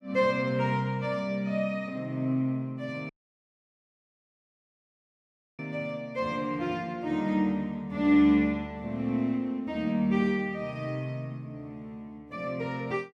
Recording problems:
dropout; at 3 s for 2.5 s

